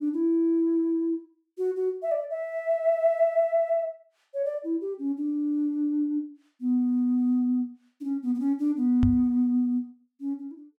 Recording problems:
knock on the microphone; at 9 s; peak +4 dB vs average level

